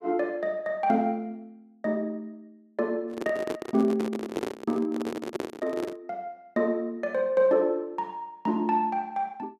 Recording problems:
handling noise; from 3 to 6 s; peak +3 dB vs average level

